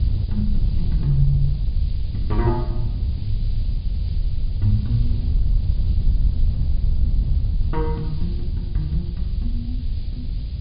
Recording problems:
low-pass filter; nothing above 4.9 kHz
hum; 50 Hz, harmonics up to 600 Hz, SNR 26 dB
background hiss; SNR 22 dB
rumble; below 74 Hz, SNR 11 dB
wind noise; below 76 Hz, SNR -3 dB

